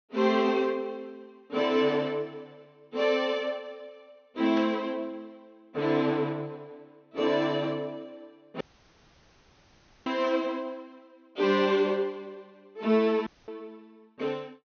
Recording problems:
treble cut off; nothing above 6.4 kHz
static burst; at 4.5 s; peak -8 dB vs average level
audio cutting out; at 8.5 s for 1.5 s and at 13 s

